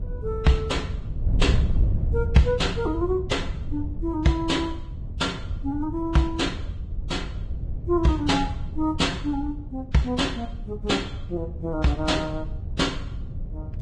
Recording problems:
lossy compression; Vorbis, log-spectral distance 2 dB
wind noise; below 100 Hz, SNR 6 dB

